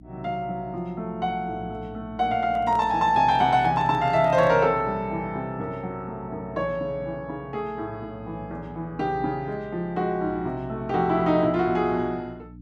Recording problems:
electrical hum; 60 Hz, harmonics up to 300 Hz, SNR 18 dB
microphone handling noise; from 2.5 to 4.5 s; peak -9 dB vs average level

